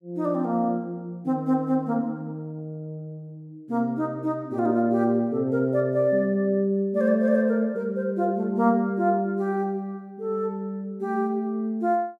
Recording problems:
none

